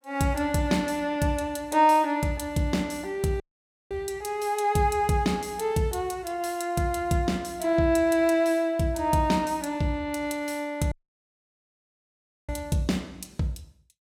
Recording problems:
dropout; at 3.5 s for 0.5 s and at 11 s for 1.5 s

